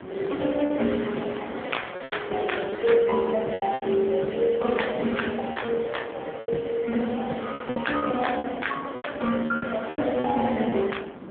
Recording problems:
telephone audio; 150 Hz to 3.5 kHz, AMR-NB
wind noise; below 740 Hz, SNR 16 dB
packet loss; 10% of the sound replaced, filled with repeated pitch periods

